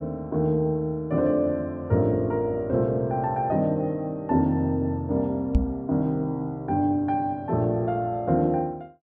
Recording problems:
knock on the microphone; at 5.5 s; peak +7 dB vs average level

